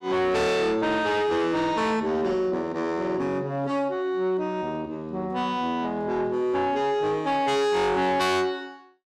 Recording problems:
distortion; soft clipping, signal-to-distortion ratio 8 dB

